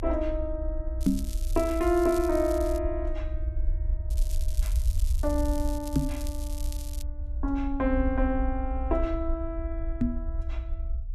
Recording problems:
low-frequency rumble; below 60 Hz, SNR 3 dB
crackling; from 1 to 3 s and from 4 to 7 s; loose cable, SNR 15 dB
knock on the microphone; at 1 s, at 6 s and at 10 s; peak +10 dB vs average level

